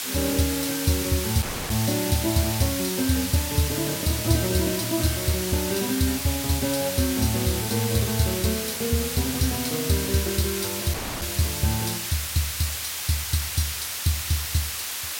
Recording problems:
background hiss; slope +2 dB per octave, SNR 2 dB
audio cutting out; at 1.5 s and at 11 s

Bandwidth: 16.5 kHz